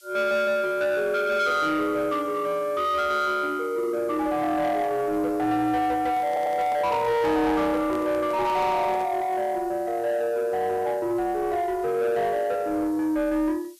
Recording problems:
distortion; soft clipping, signal-to-distortion ratio 11 dB
background hiss; SNR 27 dB
handling noise; from 6 to 9 s; peak -9 dB vs average level
stutter; at 6.5 s

